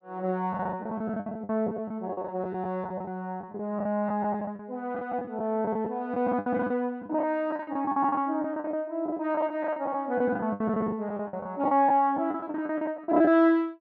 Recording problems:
lost packets; 16% of the sound replaced, filled with the last packet

